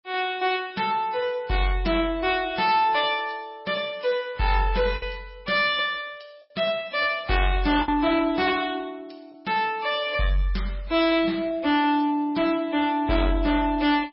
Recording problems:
lossy compression; MP3, log-spectral distance 3 dB, nothing above 4.9 kHz
distorted audio; soft clipping, signal-to-distortion ratio 12 dB
packet loss; 0.9% of the sound replaced, filled with the last packet

